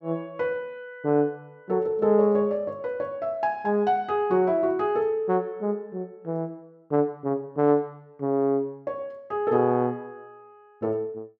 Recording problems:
none

